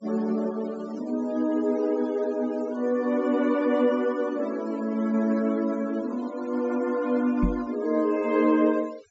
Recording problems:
low-pass filter; nothing above 8 kHz
noise reduction artefacts; signal-to-artefact ratio 23 dB
microphone bump; at 7.5 s; peak +3 dB vs average level

